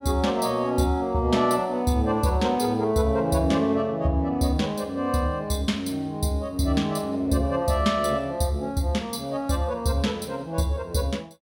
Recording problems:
none

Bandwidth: 16.5 kHz